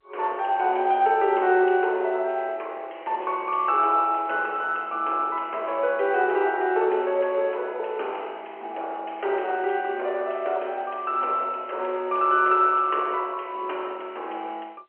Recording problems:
phone line; 320 Hz to 3.1 kHz, G.711

